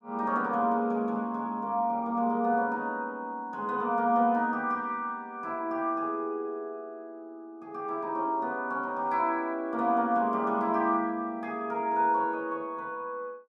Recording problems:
none

